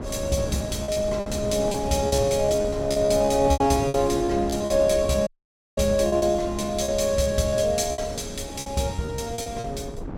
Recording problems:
wind noise; below 360 Hz, SNR 11 dB
lost packets; 13% of the sound replaced, filled with repeated pitch periods
audio cutting out; at 5.5 s for 0.5 s

